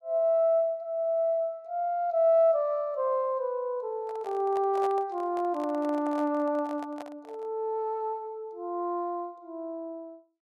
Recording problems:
handling noise; from 4 to 7.5 s; peak -7 dB vs average level

